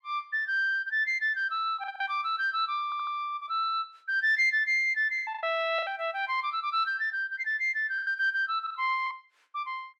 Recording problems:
packet loss; 6% of the sound replaced, filled with the last packet
audio stuttering; at 3 s

